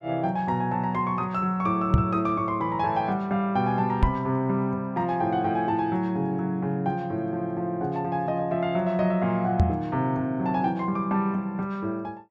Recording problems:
microphone bump; at 2 s, at 4 s and at 9.5 s; peak +9 dB vs average level

